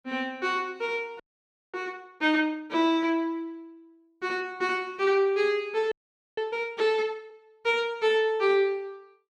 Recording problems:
audio freezing; at 1 s for 0.5 s and at 6 s

